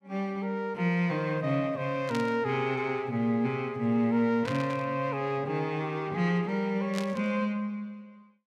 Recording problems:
burst of static; at 2 s, at 4.5 s and at 7 s; peak -4 dB vs average level

